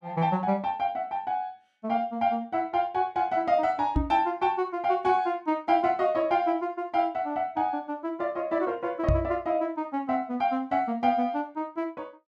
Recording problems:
microphone thump; at 4 s and at 9 s; peak +5 dB vs average level

